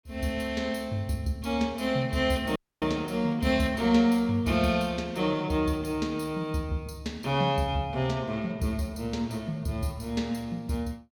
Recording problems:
audio cutting out; at 2.5 s

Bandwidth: 17.5 kHz